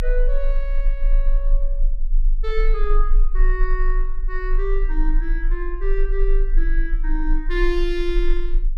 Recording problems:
rumble; below 30 Hz, strongest tone 26 Hz, SNR -5 dB

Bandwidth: 15 kHz